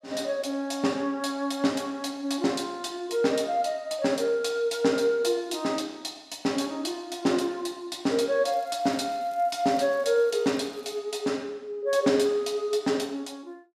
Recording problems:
crackle; from 8.5 to 11 s; loose cable, SNR 28 dB

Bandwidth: 14.5 kHz